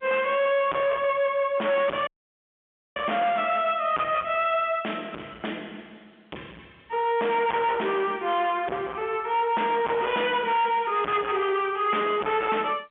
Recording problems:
phone line; 320 Hz to 3.4 kHz, G.711
distortion; hard clipping, signal-to-distortion ratio 5 dB
audio cutting out; at 2 s for 1 s

